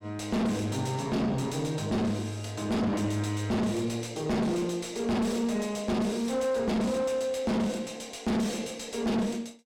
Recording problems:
distortion; soft clipping, signal-to-distortion ratio 6 dB

